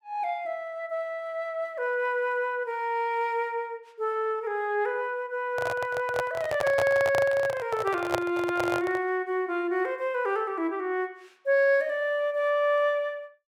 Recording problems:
handling noise; from 5.5 to 9 s; peak +4 dB vs average level

